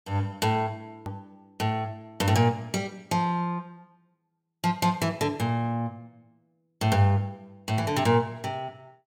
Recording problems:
edit click; at 1 s

